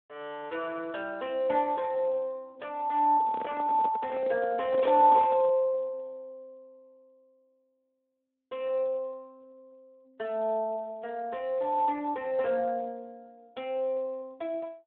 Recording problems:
phone line; 260 Hz to 3.7 kHz, Speex
handling noise; from 3 to 5.5 s; peak -4 dB vs average level

